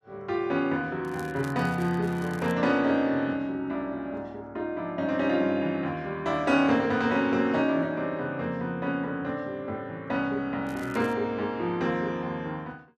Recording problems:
crackle; from 1 to 2.5 s and at 11 s; loose cable, SNR 24 dB

